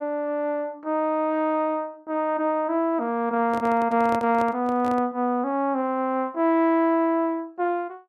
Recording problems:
microphone handling noise; from 3.5 to 5 s; peak -5 dB vs average level

